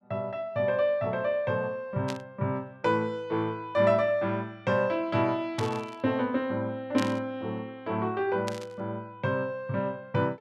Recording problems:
static burst; 4 times, first at 2 s; peak -3 dB vs average level

